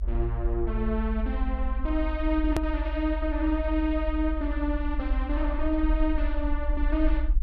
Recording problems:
rumble; below 58 Hz, strongest tone 42 Hz, SNR 1 dB
edit click; at 2.5 s

